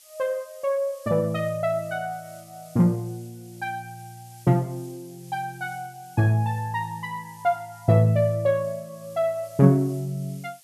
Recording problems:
hiss; SNR 25 dB

